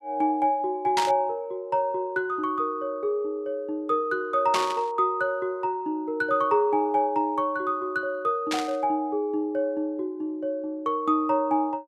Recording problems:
burst of static; at 1 s, at 4.5 s and at 8.5 s; peak +2 dB vs average level

